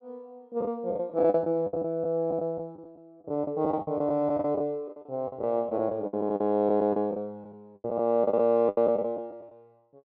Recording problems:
lost packets; 15% of the sound replaced, filled with the last packet

